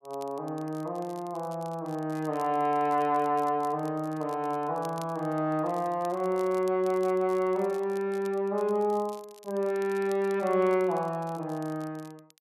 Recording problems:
crackling; vinyl, SNR 25 dB

